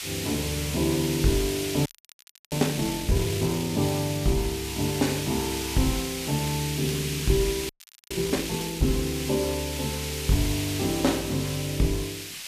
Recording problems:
hiss; SNR 5 dB
crackling; vinyl, SNR 24 dB
frozen audio; at 2 s for 0.5 s and at 7.5 s

